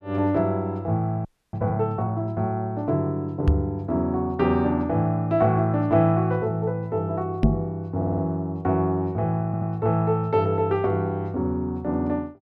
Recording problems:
frozen audio; at 1.5 s
microphone bump; at 3.5 s and at 7.5 s; peak +9 dB vs average level
audio stuttering; at 8 s and at 9.5 s

